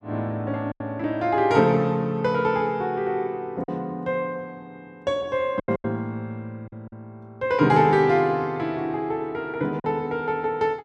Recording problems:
packet loss; 4% of the sound replaced, filled with silence

